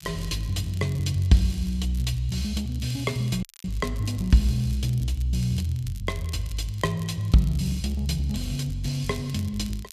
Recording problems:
crackle; vinyl, SNR 22 dB
audio cutting out; at 3.5 s

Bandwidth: 14.5 kHz